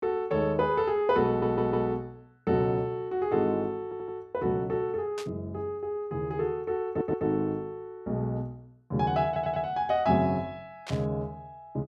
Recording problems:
audio stuttering; 4 times, first at 1.5 s
burst of static; at 5 s and at 11 s; peak -6 dB vs average level

